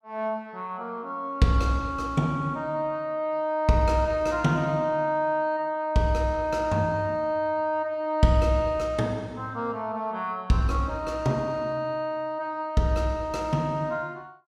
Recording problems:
none

